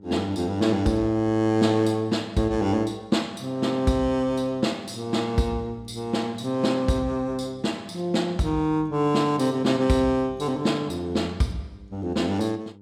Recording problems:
hum; 50 Hz, harmonics up to 900 Hz, SNR 24 dB

